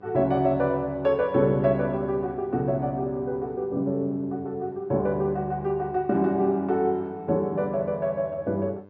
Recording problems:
electrical hum; 50 Hz, harmonics up to 1.6 kHz, SNR 25 dB

